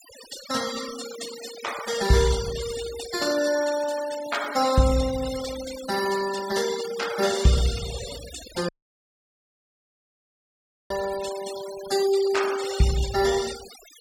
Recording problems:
noise reduction artefacts; signal-to-artefact ratio 11 dB
audio cutting out; at 8.5 s for 2 s

